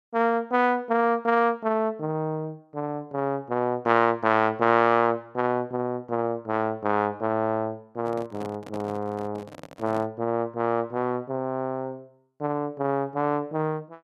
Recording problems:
microphone handling noise; from 8 to 10 s; peak -10 dB vs average level

